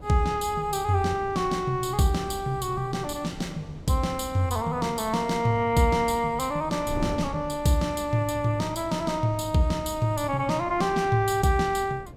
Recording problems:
wind on the microphone; below 240 Hz, SNR 17 dB

